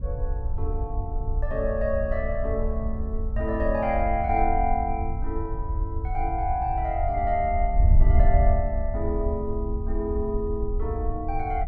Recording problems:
wind on the microphone; below 68 Hz, SNR 0 dB

